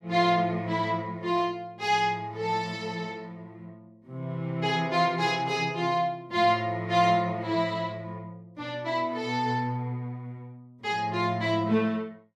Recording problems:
none

